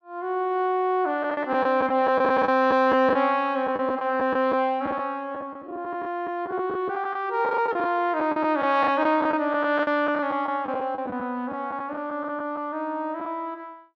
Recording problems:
packet loss; 9% of the sound replaced, filled with the last packet

